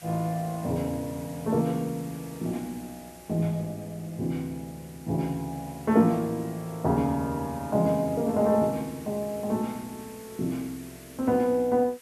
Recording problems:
hiss; SNR 20 dB

